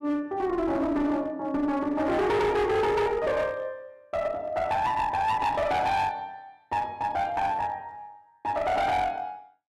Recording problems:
distorted audio; hard clipping, uneven, signal-to-distortion ratio 7 dB

